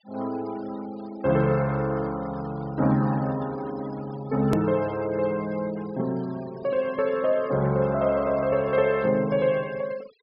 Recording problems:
treble cut off; nothing above 5.5 kHz
denoising artefacts; signal-to-artefact ratio 21 dB
click at an edit; at 4.5 s

